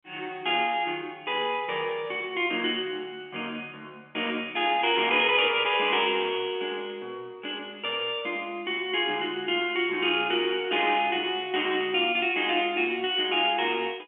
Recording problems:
phone line; 260 Hz to 3.3 kHz, G.711

